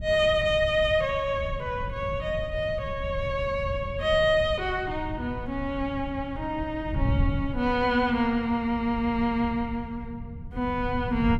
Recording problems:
wind on the microphone; below 120 Hz, SNR 9 dB

